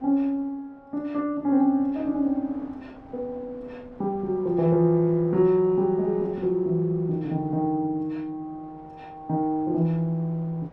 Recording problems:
wind on the microphone; below 830 Hz, SNR 25 dB

